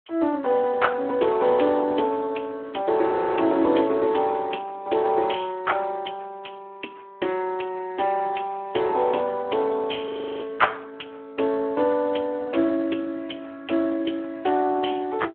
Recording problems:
telephone audio; 280 Hz to 3.3 kHz, Speex
audio freezing; at 3 s and at 10 s

